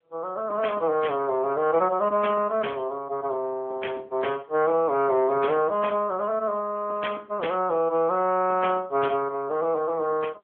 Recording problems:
telephone audio; 280 Hz to 2.8 kHz, AMR-NB

